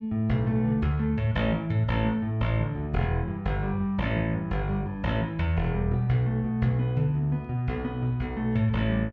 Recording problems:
none

